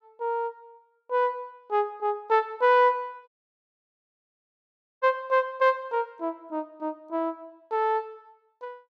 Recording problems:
audio cutting out; at 3.5 s for 1.5 s

